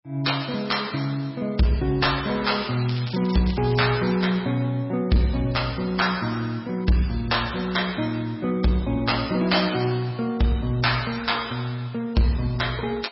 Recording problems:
lossy compression; MP3, log-spectral distance 6 dB, nothing above 5.5 kHz
distortion; soft clipping, signal-to-distortion ratio 11 dB
crackling; from 2.5 to 4 s; loose cable, SNR 14 dB

